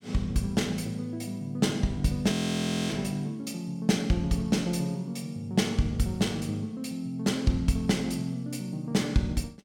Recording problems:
frozen audio; at 2.5 s for 0.5 s

